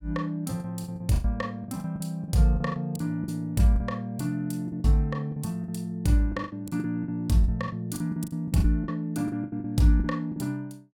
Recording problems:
lost packets; 14% of the sound replaced, filled with the last packet

